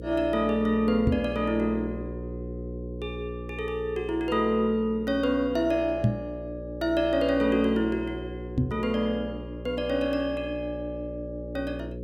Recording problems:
hum; 60 Hz, harmonics up to 540 Hz, SNR 10 dB
microphone thump; at 1 s, at 6 s and at 8.5 s; peak +7 dB vs average level

